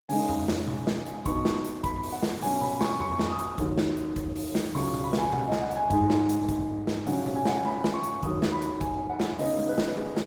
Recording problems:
lossy compression; Opus, log-spectral distance 4 dB, nothing above 19 kHz

